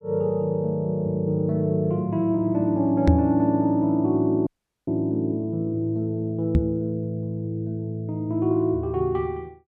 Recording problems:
microphone thump; at 3 s and at 6.5 s; peak +10 dB vs average level
audio cutting out; at 4.5 s

